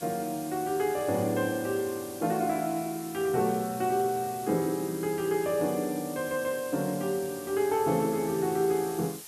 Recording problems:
hiss; slope 0 dB per octave, SNR 14 dB

